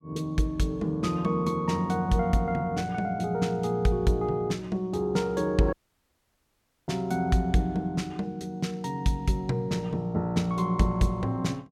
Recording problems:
audio cutting out; at 5.5 s for 1 s

